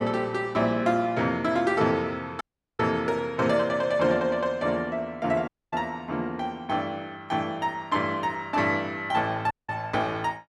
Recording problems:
dropout; at 2.5 s, at 5.5 s and at 9.5 s

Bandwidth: 12.5 kHz